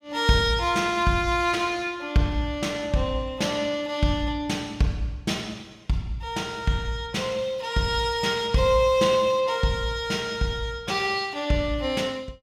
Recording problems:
none

